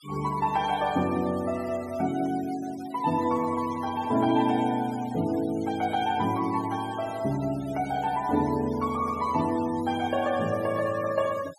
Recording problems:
noise reduction artefacts; signal-to-artefact ratio 18 dB

